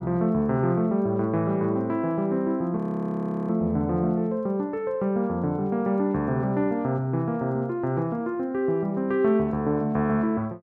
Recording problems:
frozen audio; at 3 s for 0.5 s

